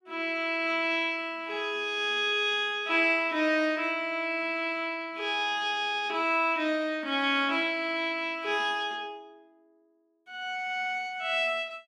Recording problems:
none

